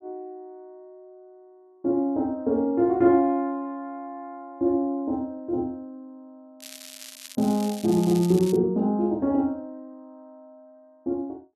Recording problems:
crackling; from 6.5 to 8.5 s; loose cable, SNR 16 dB

